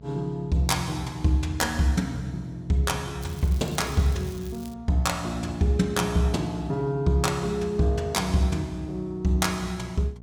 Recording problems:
hum; 60 Hz, harmonics up to 660 Hz, SNR 19 dB
crackling; from 3 to 4.5 s; loose cable, SNR 21 dB

